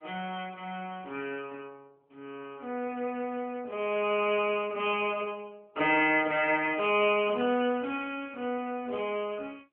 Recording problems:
phone line; 280 Hz to 3.3 kHz, AMR-NB

